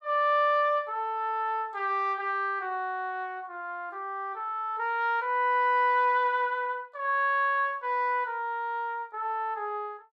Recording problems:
none

